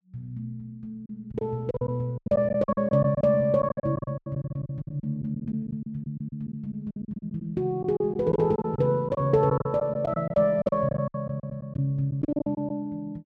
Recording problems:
packet loss; 15% of the sound replaced, filled with silence

